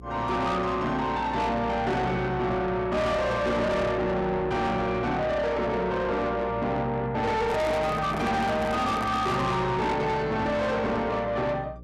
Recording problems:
distortion; soft clipping, signal-to-distortion ratio 8 dB
electrical hum; 60 Hz, harmonics up to 600 Hz, SNR 17 dB
handling noise; from 7.5 to 9.5 s; peak -2 dB vs average level

